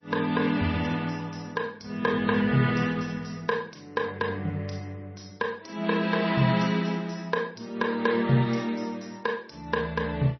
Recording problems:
lossy compression; MP2, then MP3, log-spectral distance 5 dB, nothing above 5.8 kHz

